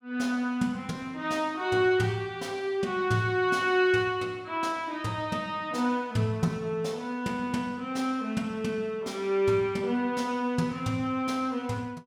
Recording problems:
none

